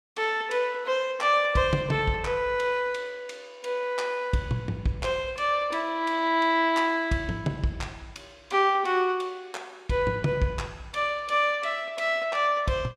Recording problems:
none

